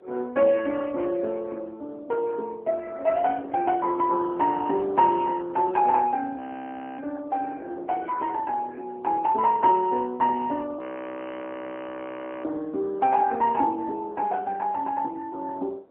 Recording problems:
telephone audio; 260 Hz to 2.8 kHz, AMR-NB
wind noise; below 650 Hz, SNR 22 dB
frozen audio; at 6.5 s for 0.5 s and at 11 s for 1.5 s

